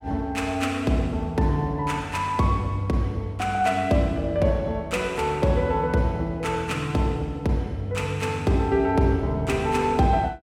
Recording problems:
none

